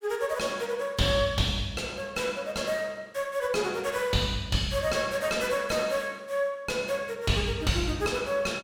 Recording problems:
distortion; soft clipping, signal-to-distortion ratio 6 dB

